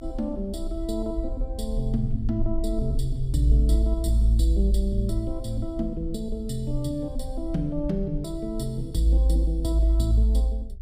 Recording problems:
rumble; below 50 Hz, SNR 9 dB

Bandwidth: 15 kHz